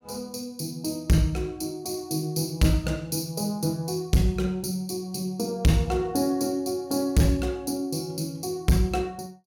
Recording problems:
distortion; hard clipping, signal-to-distortion ratio 11 dB

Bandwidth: 17 kHz